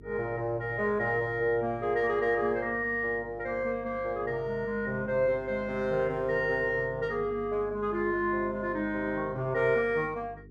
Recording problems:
electrical hum; 50 Hz, harmonics up to 450 Hz, SNR 20 dB

